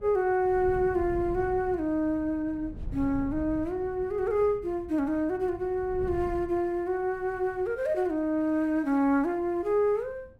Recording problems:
wind on the microphone; below 140 Hz, SNR 16 dB

